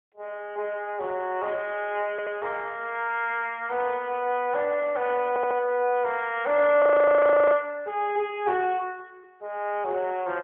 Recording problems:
phone line; 320 Hz to 3.5 kHz, AMR-NB
stutter; at 2 s and at 5.5 s
audio freezing; at 7 s for 0.5 s

